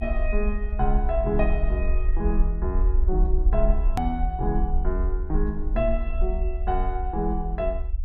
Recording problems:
rumble; below 54 Hz, SNR -2 dB
hard cut with a click; at 4 s

